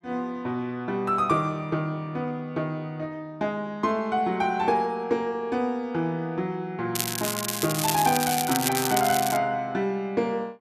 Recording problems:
crackle; from 7 to 9.5 s; loose cable, SNR 2 dB

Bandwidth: 14.5 kHz